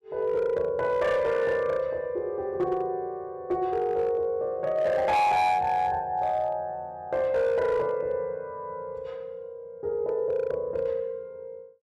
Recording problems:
distortion; hard clipping, signal-to-distortion ratio 12 dB

